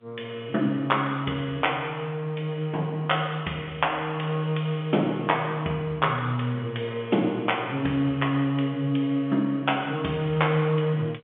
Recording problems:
telephone audio; 190 Hz to 3.4 kHz, G.711

